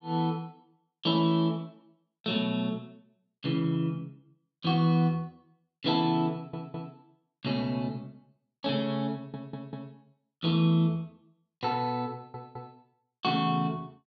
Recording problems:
audio stuttering; at 6.5 s, at 9 s and at 12 s

